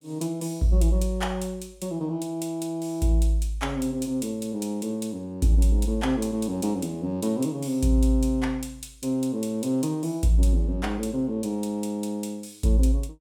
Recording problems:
none

